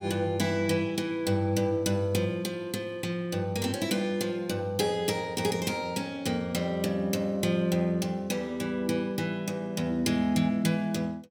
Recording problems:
none

